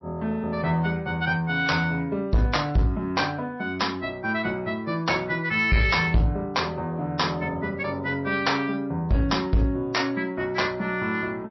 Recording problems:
lossy codec; MP3, log-spectral distance 3 dB, nothing above 5.7 kHz
distortion; soft clipping, signal-to-distortion ratio 11 dB

